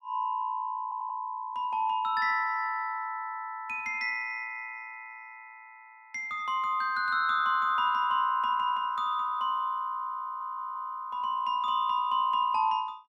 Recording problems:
stutter; at 1 s and at 10 s

